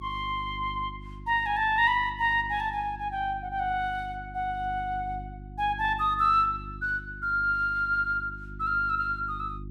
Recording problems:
mains hum; 50 Hz, harmonics up to 350 Hz, SNR 16 dB

